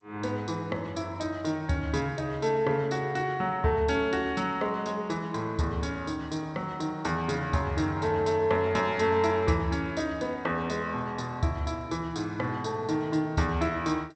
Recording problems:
lossy compression; G.722, log-spectral distance 2 dB, nothing above 8.2 kHz

